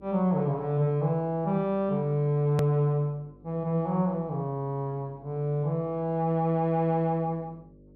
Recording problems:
hum; 50 Hz, harmonics up to 600 Hz, SNR 26 dB
edit click; at 2.5 s

